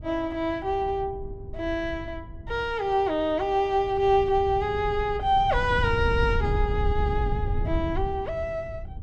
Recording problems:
wind noise; below 100 Hz, SNR 7 dB

